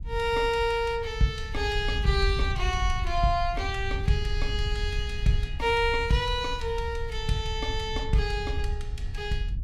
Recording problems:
wind noise; below 74 Hz, SNR 5 dB

